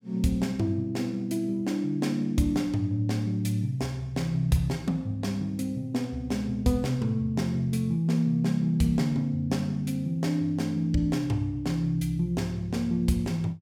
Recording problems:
none

